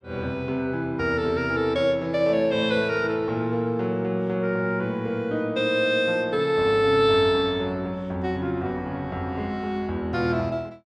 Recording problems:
none

